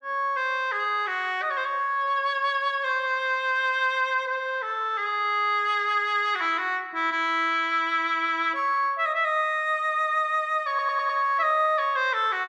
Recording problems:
audio stuttering; at 11 s

